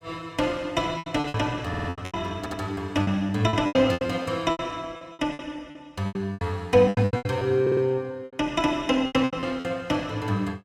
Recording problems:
lost packets; 17% of the sound replaced, filled with repeated pitch periods
audio stuttering; at 1.5 s, at 2.5 s and at 7.5 s

